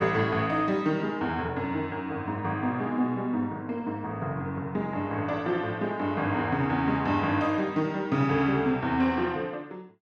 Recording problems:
none

